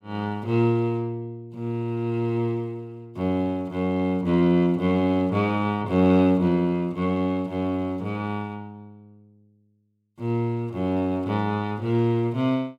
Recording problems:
none

